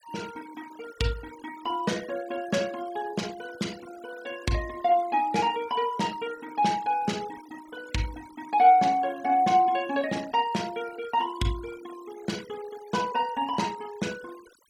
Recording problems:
noise reduction artefacts; signal-to-artefact ratio 20 dB

